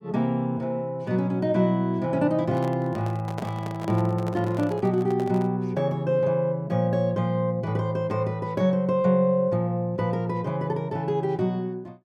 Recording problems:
handling noise; from 2.5 to 5.5 s; peak -6 dB vs average level

